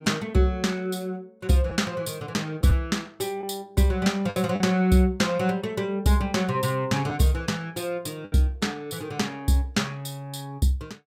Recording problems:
packet loss; 2% of the sound replaced, filled with the last packet

